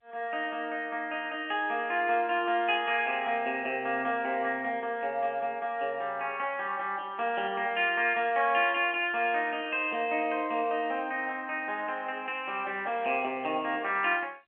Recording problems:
telephone audio; 280 Hz to 3.3 kHz, G.711

